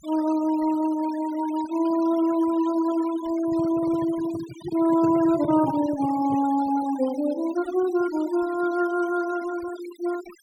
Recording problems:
denoising artefacts; signal-to-artefact ratio 18 dB
handling noise; from 3.5 to 6.5 s; peak -6 dB vs average level

